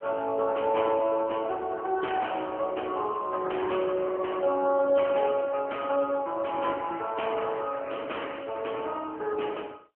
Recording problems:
telephone audio; 280 Hz to 3.1 kHz, AMR-NB

